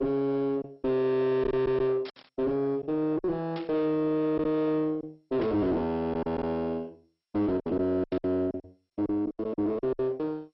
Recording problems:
lossy compression; MP2, log-spectral distance 2 dB, nothing above 5.5 kHz
distorted audio; soft clipping, signal-to-distortion ratio 5 dB
packet loss; 8% of the sound replaced, filled with silence
burst of static; 4 times, first at 2 s; peak -10 dB vs average level

